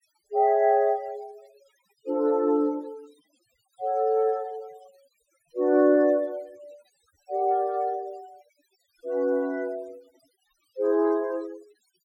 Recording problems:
noise reduction artefacts; signal-to-artefact ratio 28 dB

